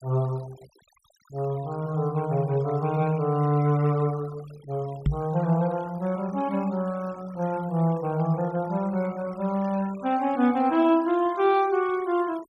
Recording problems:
denoising artefacts; signal-to-artefact ratio 23 dB
microphone thump; at 5 s; peak +5 dB vs average level

